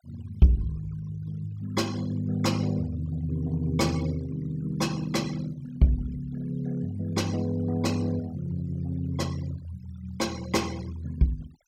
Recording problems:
noise reduction artefacts; signal-to-artefact ratio 21 dB

